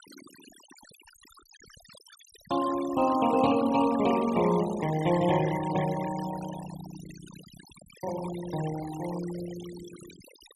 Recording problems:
noise reduction artefacts; signal-to-artefact ratio 15 dB

